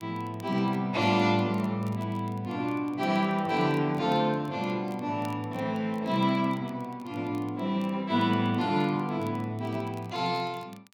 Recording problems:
crackling; vinyl, SNR 29 dB

